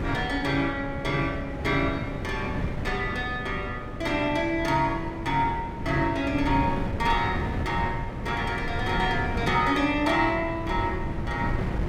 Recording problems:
wind noise; below 300 Hz, SNR 6 dB

